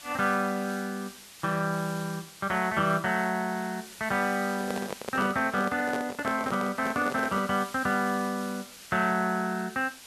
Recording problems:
hiss; slope +1 dB per octave, SNR 16 dB
handling noise; from 4.5 to 7.5 s; peak -2 dB vs average level

